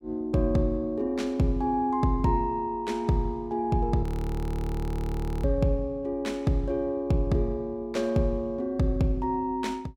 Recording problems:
audio freezing; at 4 s for 1.5 s

